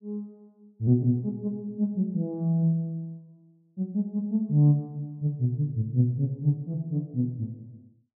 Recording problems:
none

